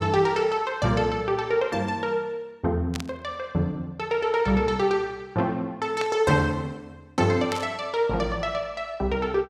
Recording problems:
burst of static; at 3 s, at 6 s and at 7.5 s; peak -3 dB vs average level

